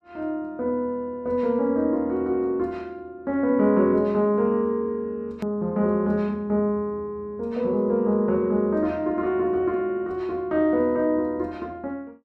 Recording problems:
click at an edit; at 5.5 s

